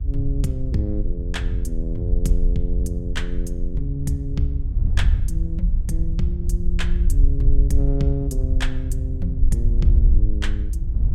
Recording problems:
rumble; below 50 Hz, strongest tone 18 Hz, SNR -1 dB
wind noise; below 72 Hz, SNR -2 dB

